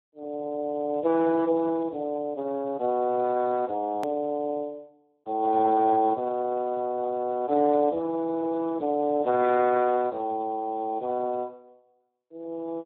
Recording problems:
telephone audio; 190 Hz to 2.1 kHz, Speex
edit click; at 4 s

